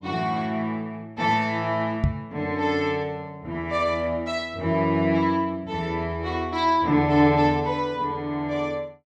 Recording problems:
microphone thump; at 2 s; peak +5 dB vs average level

